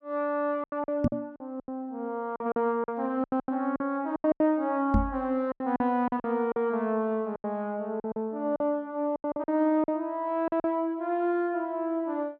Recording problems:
lost packets; 12% of the sound replaced, filled with silence
knock on the microphone; at 1 s and at 5 s; peak +7 dB vs average level

